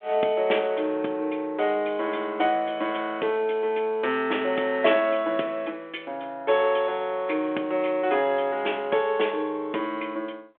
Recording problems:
telephone audio; 260 Hz to 3.5 kHz, G.726

